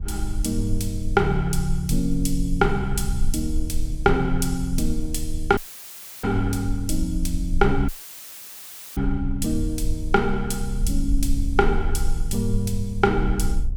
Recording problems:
rumble; below 46 Hz, strongest tone 18 Hz, SNR 5 dB
audio cutting out; at 5.5 s for 0.5 s and at 8 s for 1 s; filled with static

